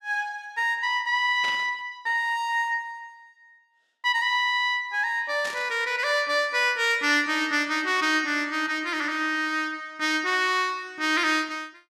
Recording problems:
static burst; at 1.5 s and at 5.5 s; peak -8 dB vs average level

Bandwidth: 14 kHz